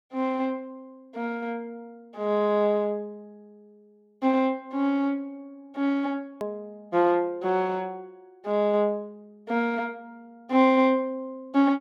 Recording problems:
hard cut with a click; at 6.5 s

